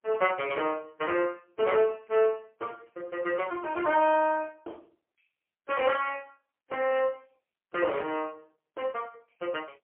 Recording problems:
phone line; 280 Hz to 3.3 kHz, AMR-NB, then MP3

